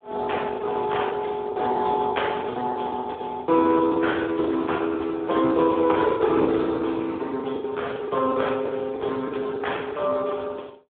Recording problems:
phone line; 260 Hz to 3.6 kHz, Speex
packet loss; 16% of the sound replaced, filled with the last packet

